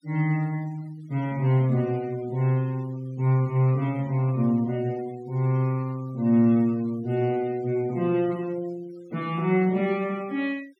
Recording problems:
denoising artefacts; signal-to-artefact ratio 25 dB

